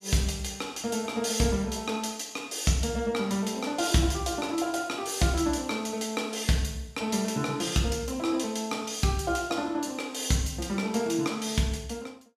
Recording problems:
none

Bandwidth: 14.5 kHz